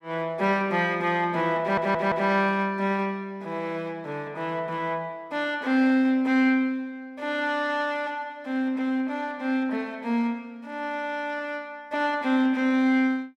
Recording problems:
audio stuttering; at 1.5 s

